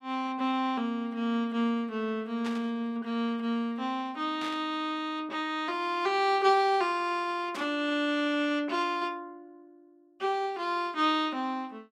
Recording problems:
static burst; at 2.5 s, at 4.5 s and at 7.5 s; peak -7 dB vs average level

